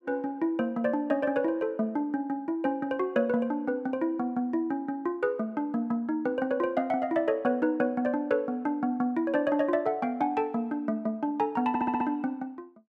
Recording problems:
audio stuttering; at 12 s

